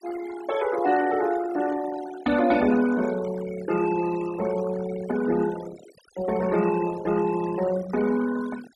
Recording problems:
noise reduction artefacts; signal-to-artefact ratio 15 dB

